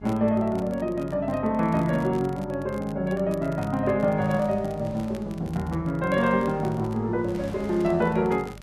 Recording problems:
hum; 50 Hz, harmonics up to 600 Hz, SNR 19 dB
wind on the microphone; below 1.6 kHz, SNR 23 dB
crackle; vinyl, SNR 26 dB

